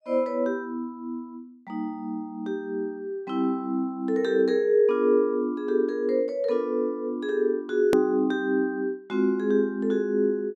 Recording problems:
edit click; at 8 s

